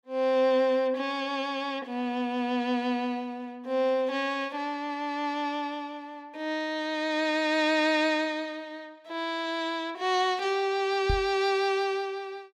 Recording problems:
microphone bump; at 11 s; peak +3 dB vs average level

